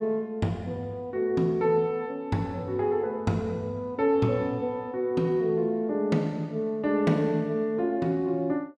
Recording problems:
none

